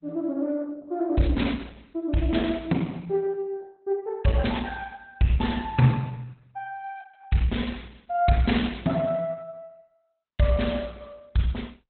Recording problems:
lossy codec; Opus, log-spectral distance 4 dB, nothing above 4 kHz

